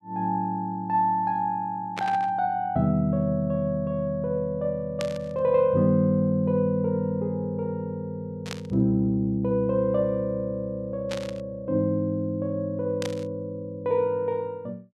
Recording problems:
burst of static; 5 times, first at 2 s; peak -3 dB vs average level

